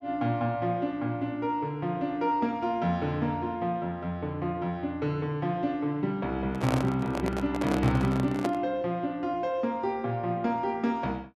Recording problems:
handling noise; from 6.5 to 8.5 s; peak +2 dB vs average level

